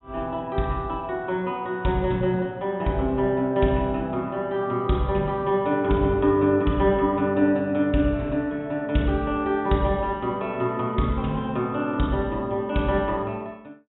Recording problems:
low-pass filter; nothing above 3.8 kHz

